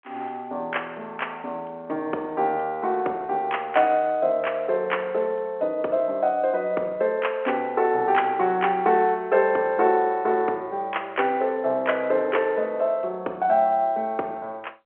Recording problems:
phone line; 320 Hz to 3.2 kHz, G.711

